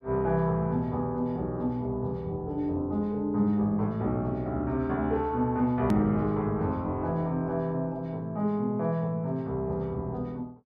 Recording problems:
hard cut with a click; at 6 s

